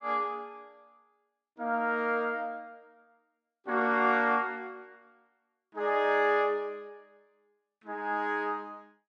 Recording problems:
none

